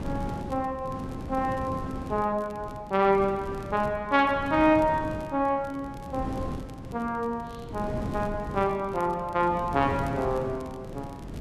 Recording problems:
wind noise; below 320 Hz, SNR 10 dB
crackling; vinyl, SNR 30 dB

